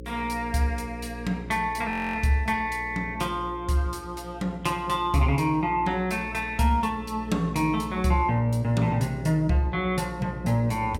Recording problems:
hum; 60 Hz, harmonics up to 540 Hz, SNR 14 dB
audio freezing; at 2 s

